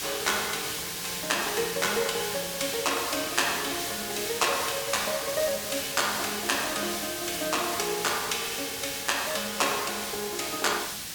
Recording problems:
background hiss; slope +1 dB per octave, SNR 3 dB

